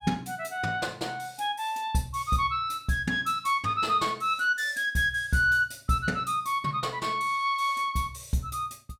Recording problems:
none

